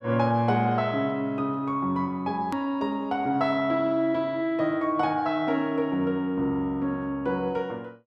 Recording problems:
edit click; at 2.5 s

